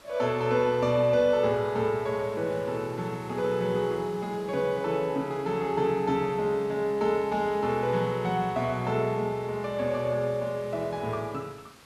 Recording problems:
background hiss; slope -3 dB per octave, SNR 23 dB

